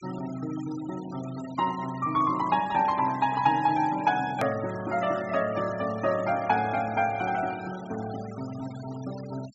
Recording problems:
treble missing; nothing above 7.7 kHz
noise reduction artefacts; signal-to-artefact ratio 18 dB
click at an edit; at 4.5 s

